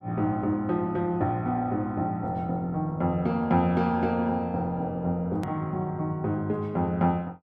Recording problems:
hard cut with a click; at 5.5 s

